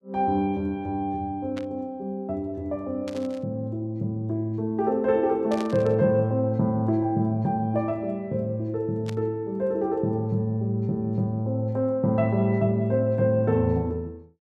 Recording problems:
burst of static; 4 times, first at 1.5 s; peak -10 dB vs average level

